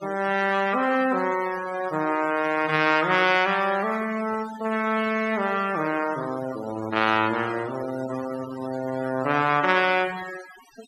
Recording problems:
denoising artefacts; signal-to-artefact ratio 15 dB

